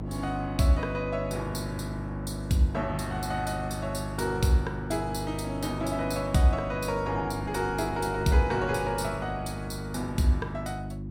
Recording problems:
hum; 50 Hz, harmonics up to 350 Hz, SNR 6 dB
wind on the microphone; below 500 Hz, SNR 19 dB

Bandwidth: 16.5 kHz